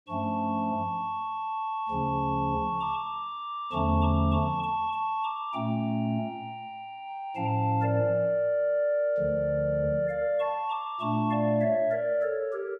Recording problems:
none

